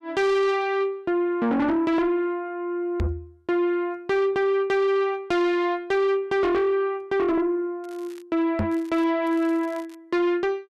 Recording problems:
distorted audio; soft clipping, signal-to-distortion ratio 7 dB
microphone thump; at 3 s and at 8.5 s; peak +2 dB vs average level
crackling; at 8 s, at 8.5 s and at 9.5 s; loose cable, SNR 29 dB

